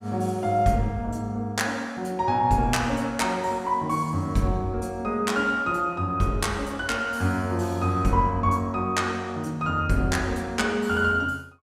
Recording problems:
none

